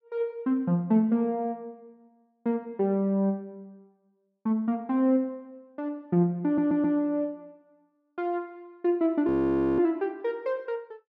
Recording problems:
audio stuttering; at 6.5 s
audio freezing; at 9.5 s for 0.5 s

